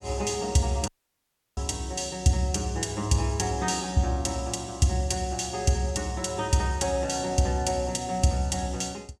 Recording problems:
dropout; at 1 s for 0.5 s

